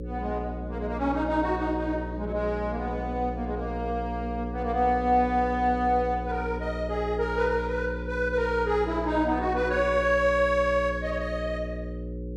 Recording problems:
electrical hum; 60 Hz, harmonics up to 540 Hz, SNR 8 dB

